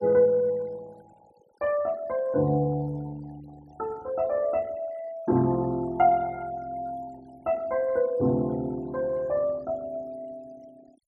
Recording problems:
noise reduction artefacts; signal-to-artefact ratio 25 dB

